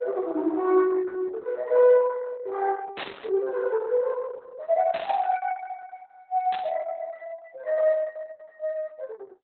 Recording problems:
lossy compression; Opus, log-spectral distance 3 dB, nothing above 4 kHz
static burst; at 3 s, at 5 s and at 6.5 s; peak -7 dB vs average level

